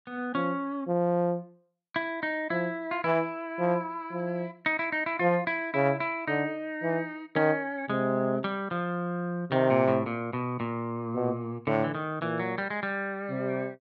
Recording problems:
none

